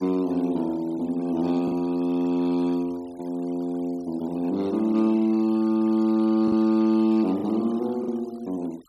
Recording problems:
denoising artefacts; signal-to-artefact ratio 25 dB
packet loss; 1.8% of the sound replaced, filled with the last packet

